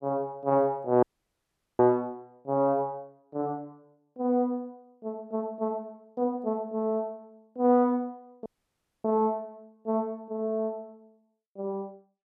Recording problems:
dropout; at 1 s for 1 s and at 8.5 s for 0.5 s

